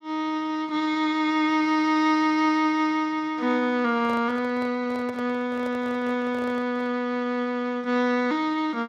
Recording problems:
handling noise; from 4 to 7 s; peak -11 dB vs average level

